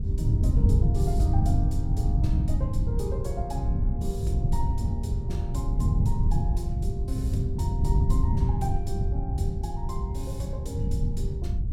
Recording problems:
wind on the microphone; below 110 Hz, SNR -9 dB

